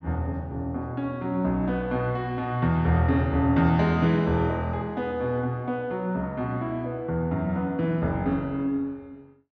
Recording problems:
none

